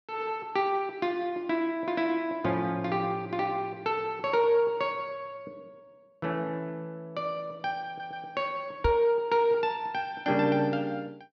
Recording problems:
stutter; at 8 s
microphone bump; at 9 s; peak +3 dB vs average level

